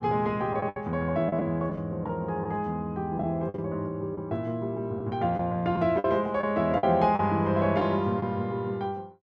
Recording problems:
packet loss; 6% of the sound replaced, filled with the last packet

